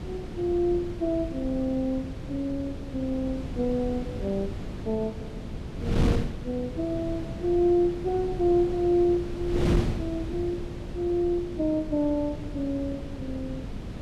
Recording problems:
wind on the microphone; below 270 Hz, SNR 6 dB

